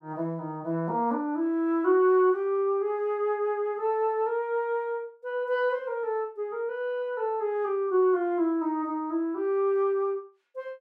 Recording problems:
none

